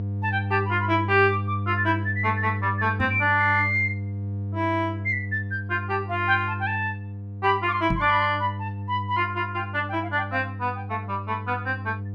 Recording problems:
electrical hum; 50 Hz, harmonics up to 500 Hz, SNR 7 dB
microphone thump; at 3 s and at 8 s; peak +1 dB vs average level

